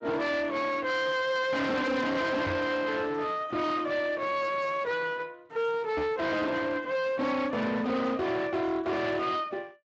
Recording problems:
codec artefacts; Speex, log-spectral distance 3 dB
distortion; hard clipping, signal-to-distortion ratio 7 dB
microphone thump; at 2.5 s and at 6 s; peak 0 dB vs average level

